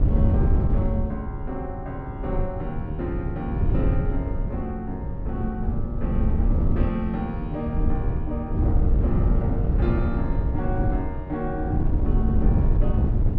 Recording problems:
wind on the microphone; below 110 Hz, SNR -6 dB

